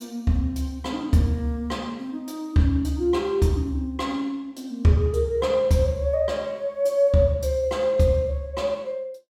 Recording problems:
none

